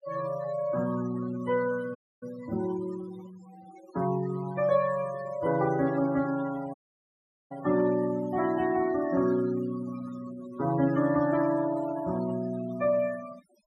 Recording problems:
noise reduction artefacts; signal-to-artefact ratio 16 dB
dropout; at 2 s and at 6.5 s for 1 s

